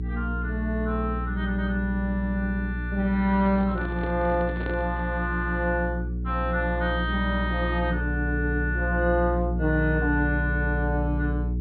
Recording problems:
treble cut off; nothing above 4.4 kHz
hum; 60 Hz, harmonics up to 420 Hz, SNR 3 dB
handling noise; from 3.5 to 5 s; peak -5 dB vs average level

